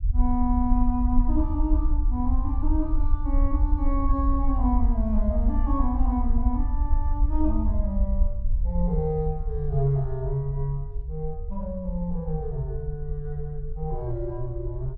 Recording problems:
rumble; below 58 Hz, SNR -1 dB

